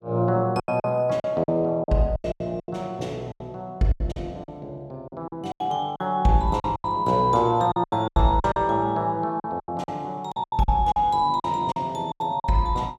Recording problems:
lost packets; 15% of the sound replaced, filled with silence

